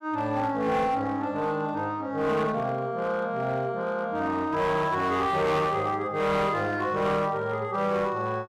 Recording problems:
distorted audio; hard clipping, signal-to-distortion ratio 11 dB

